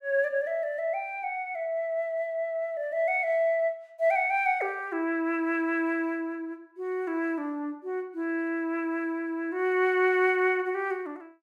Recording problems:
none

